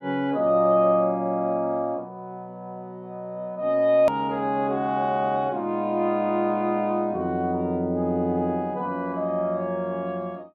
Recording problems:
click at an edit; at 4 s

